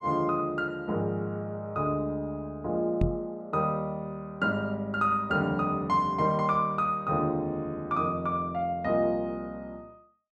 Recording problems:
microphone thump; at 3 s; peak +5 dB vs average level

